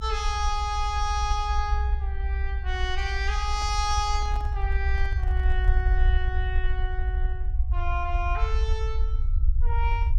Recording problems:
low-frequency rumble; below 62 Hz, SNR -3 dB
microphone handling noise; from 3.5 to 6 s; peak -11 dB vs average level

